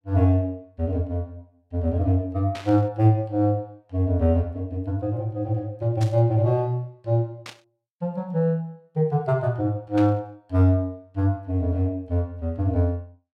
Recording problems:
static burst; 4 times, first at 2.5 s; peak -9 dB vs average level

